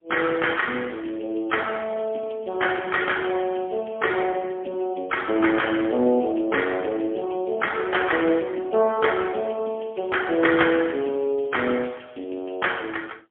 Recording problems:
phone line; 220 Hz to 3.3 kHz, AMR-NB, then MP3

